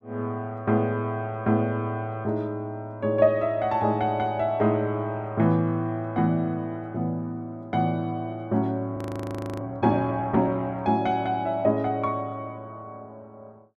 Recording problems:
frozen audio; at 9 s for 0.5 s

